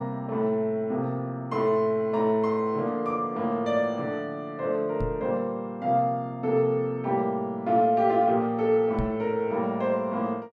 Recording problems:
microphone thump; at 5 s and at 9 s; peak -1 dB vs average level

